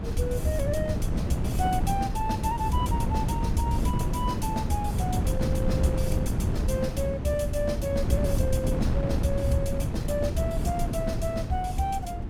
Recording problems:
wind noise; below 190 Hz, SNR -1 dB

